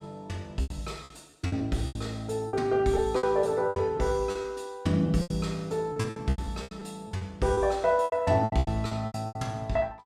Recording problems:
lost packets; 15% of the sound replaced, filled with repeated pitch periods

